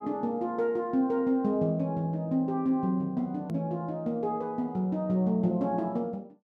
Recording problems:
click at an edit; at 3.5 s

